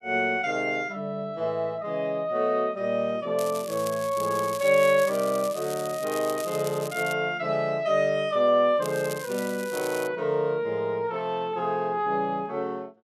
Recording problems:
crackle; from 3.5 to 7 s and from 9 to 10 s; loose cable, SNR 14 dB

